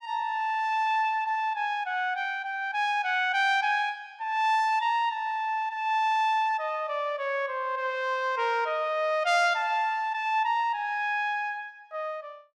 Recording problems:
none

